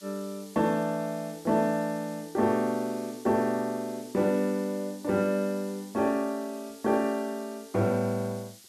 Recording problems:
background hiss; slope +4 dB per octave, SNR 20 dB

